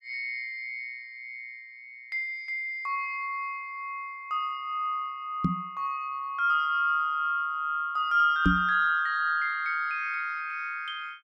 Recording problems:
knock on the microphone; at 5.5 s and at 8.5 s; peak +8 dB vs average level

